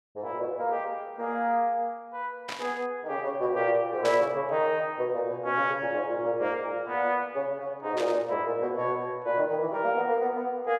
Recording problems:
burst of static; at 2.5 s, at 4 s and at 8 s; peak -3 dB vs average level

